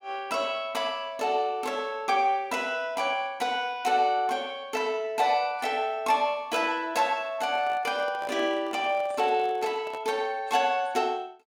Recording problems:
handling noise; from 7.5 to 10 s; peak -10 dB vs average level

